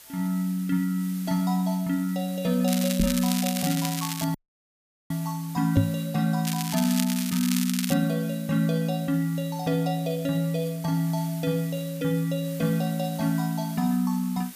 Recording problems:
hiss; slope +1 dB per octave, SNR 17 dB
crackle; from 2.5 to 4 s and from 6.5 to 8 s; loose cable, SNR 6 dB
knock on the microphone; at 3 s and at 6 s; peak +9 dB vs average level
dropout; at 4.5 s for 1 s

